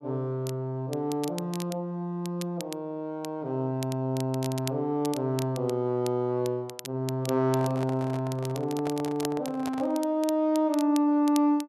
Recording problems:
crackle; vinyl, SNR 15 dB
handling noise; from 7.5 to 10 s; peak -5 dB vs average level

